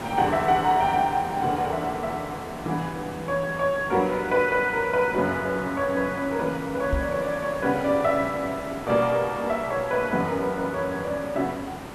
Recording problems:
hiss; slope -7 dB per octave, SNR 12 dB
microphone thump; at 7 s; peak +1 dB vs average level

